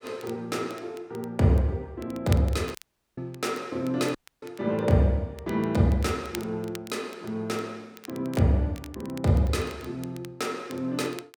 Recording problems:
crackling; vinyl, SNR 20 dB
audio cutting out; at 3 s and at 4 s

